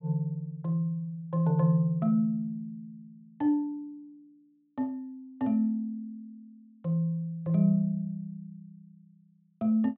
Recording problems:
low-pass filter; nothing above 4 kHz

